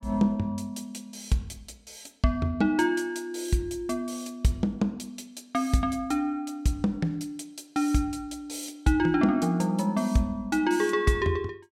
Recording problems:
none

